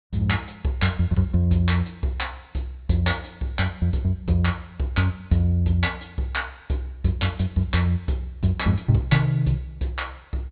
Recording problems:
treble cut off; nothing above 4.3 kHz

